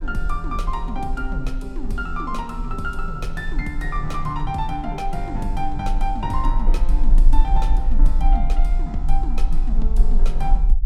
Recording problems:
rumble; below 36 Hz, strongest tone 24 Hz, SNR -3 dB

